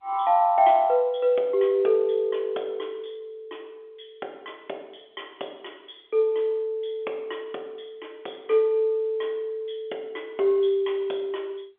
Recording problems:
telephone audio; 280 Hz to 3.5 kHz, G.711

